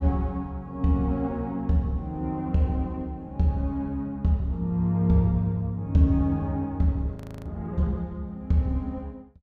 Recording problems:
frozen audio; at 7 s

